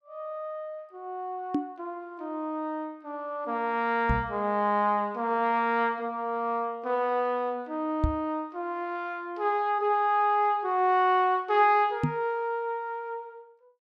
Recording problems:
knock on the microphone; 4 times, first at 1.5 s; peak +5 dB vs average level

